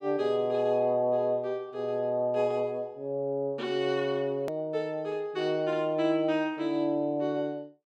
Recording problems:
edit click; at 4.5 s

